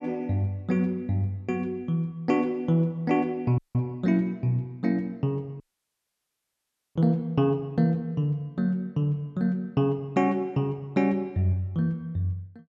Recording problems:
dropout; at 3.5 s and at 5.5 s for 1.5 s

